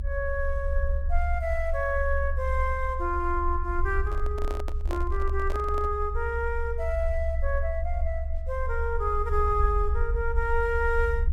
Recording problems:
rumble; below 68 Hz, strongest tone 22 Hz, SNR 1 dB
microphone handling noise; from 4 to 6 s; peak -4 dB vs average level

